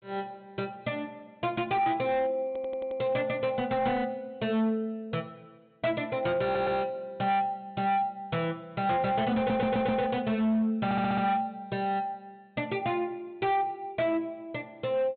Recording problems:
low-pass filter; nothing above 4 kHz
distorted audio; hard clipping, signal-to-distortion ratio 12 dB
stutter; 4 times, first at 2.5 s

